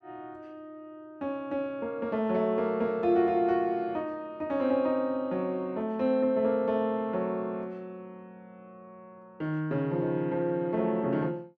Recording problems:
none

